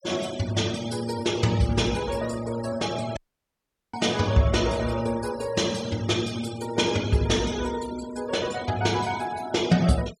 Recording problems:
denoising artefacts; signal-to-artefact ratio 15 dB
dropout; at 3 s for 1 s

